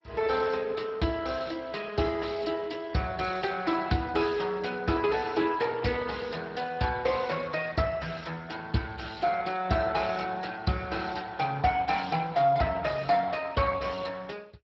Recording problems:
lossy compression; MP2, then Speex, log-spectral distance 9 dB

